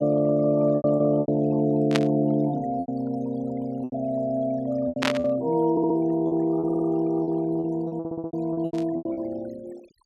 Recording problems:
denoising artefacts; signal-to-artefact ratio 23 dB
packet loss; 11% of the sound replaced, filled with repeated pitch periods
static burst; at 2 s, at 5 s and at 8.5 s; peak +3 dB vs average level
audio stuttering; at 5.5 s, at 6.5 s and at 8 s

